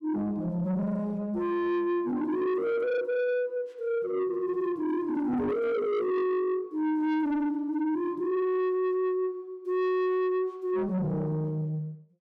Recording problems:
distorted audio; soft clipping, signal-to-distortion ratio 8 dB

